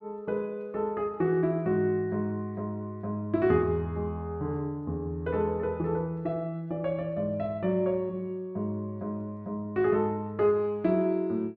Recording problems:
none

